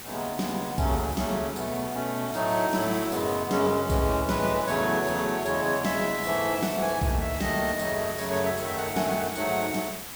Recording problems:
hiss; slope -1 dB per octave, SNR 10 dB

